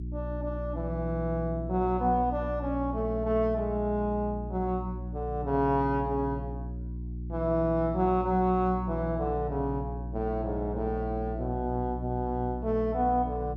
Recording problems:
hum; 60 Hz, harmonics up to 360 Hz, SNR 7 dB

